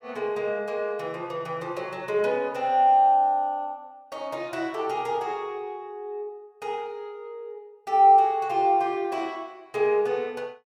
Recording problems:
none

